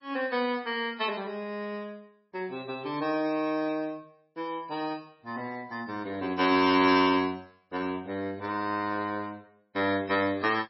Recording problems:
lossy codec; MP3, log-spectral distance 3 dB, nothing above 4.5 kHz

